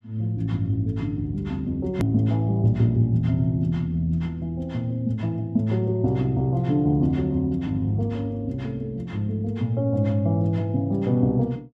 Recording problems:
click at an edit; at 2 s

